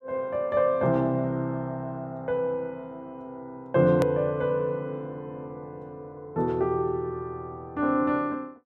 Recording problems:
edit click; at 4 s

